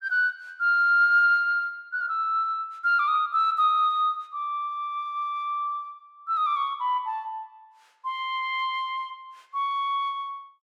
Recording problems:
none

